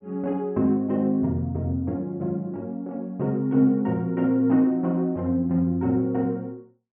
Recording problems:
low-pass filter; nothing above 3.3 kHz

